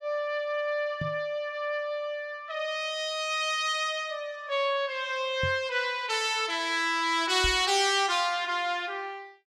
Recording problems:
microphone thump; at 1 s, at 5.5 s and at 7.5 s; peak -2 dB vs average level

